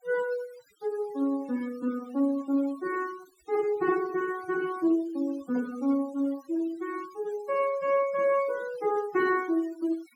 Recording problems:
denoising artefacts; signal-to-artefact ratio 20 dB

